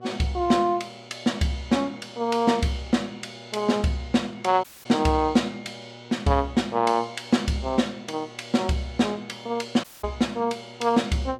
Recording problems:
hum; 60 Hz, harmonics up to 1.3 kHz, SNR 23 dB
audio cutting out; at 4.5 s and at 10 s

